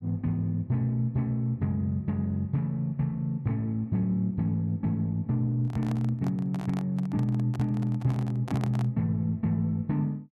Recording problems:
microphone handling noise; from 5.5 to 9 s; peak -5 dB vs average level

